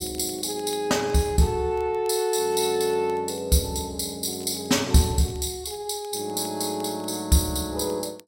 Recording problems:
crackle; vinyl, SNR 29 dB

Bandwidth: 16 kHz